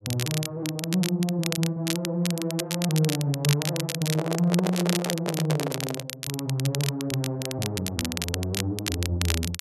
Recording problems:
crackling; vinyl, SNR 5 dB
handling noise; from 4 to 6 s; peak +3 dB vs average level

